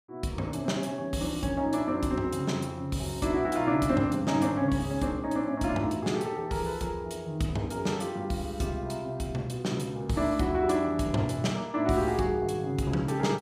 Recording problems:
none

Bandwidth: 15.5 kHz